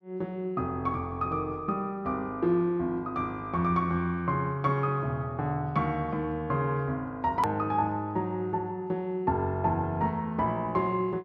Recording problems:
click at an edit; at 7.5 s

